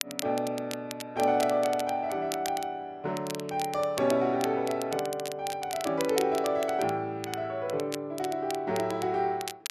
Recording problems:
crackling; vinyl, SNR 12 dB

